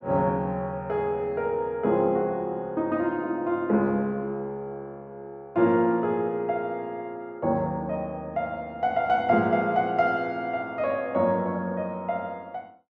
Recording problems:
none

